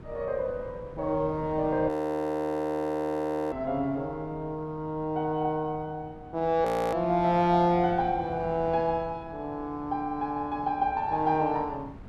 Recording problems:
wind on the microphone; below 320 Hz, SNR 18 dB
frozen audio; at 2 s for 1.5 s and at 6.5 s

